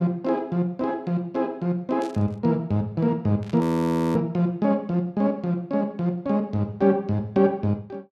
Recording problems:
static burst; at 2 s and at 3.5 s; peak -15 dB vs average level
frozen audio; at 3.5 s for 0.5 s

